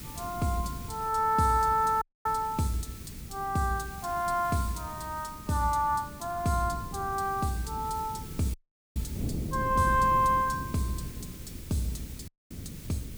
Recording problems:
background hiss; slope +1 dB per octave, SNR 18 dB
wind noise; below 230 Hz, SNR 12 dB
audio cutting out; at 2 s, at 8.5 s and at 12 s

